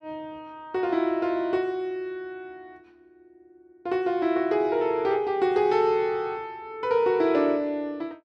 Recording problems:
none

